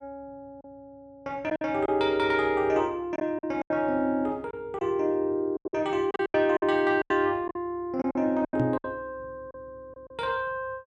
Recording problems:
lost packets; 10% of the sound replaced, filled with silence
microphone thump; at 8.5 s; peak +1 dB vs average level

